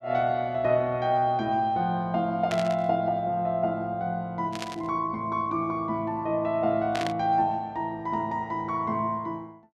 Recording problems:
burst of static; at 2.5 s, at 4.5 s and at 7 s; peak -2 dB vs average level

